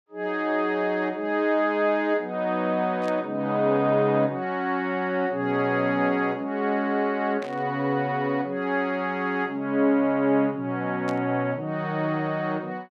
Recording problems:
static burst; at 3 s, at 7.5 s and at 11 s; peak -11 dB vs average level

